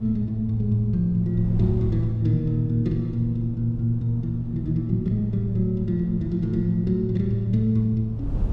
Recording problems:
wind on the microphone; below 120 Hz, SNR 13 dB

